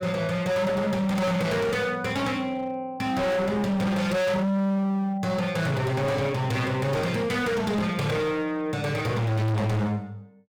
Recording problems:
distorted audio; hard clipping, signal-to-distortion ratio 6 dB

